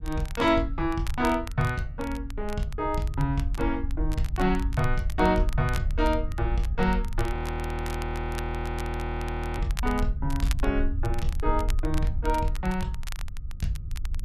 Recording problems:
wind noise; below 68 Hz, SNR 4 dB
crackle; vinyl, SNR 16 dB
audio freezing; at 7.5 s for 2.5 s

